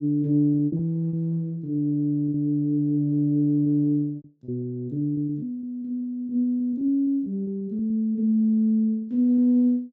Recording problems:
treble missing; nothing above 8 kHz
lost packets; 10% of the sound replaced, filled with repeated pitch periods

